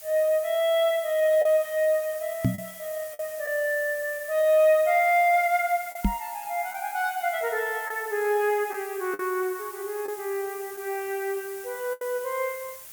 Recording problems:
background hiss; slope +1 dB per octave, SNR 15 dB
lost packets; 3% of the sound replaced, filled with the last packet
microphone bump; at 2.5 s and at 6 s; peak +6 dB vs average level

